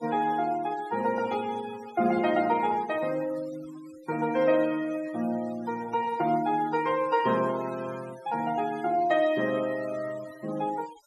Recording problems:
denoising artefacts; signal-to-artefact ratio 19 dB

